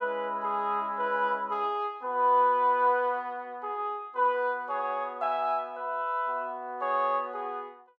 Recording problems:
none

